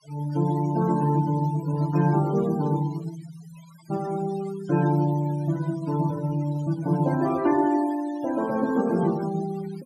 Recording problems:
noise reduction artefacts; signal-to-artefact ratio 18 dB

